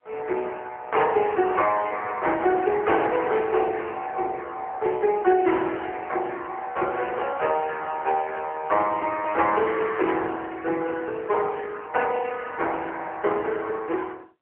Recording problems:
telephone audio; 320 Hz to 3.2 kHz, AMR-NB

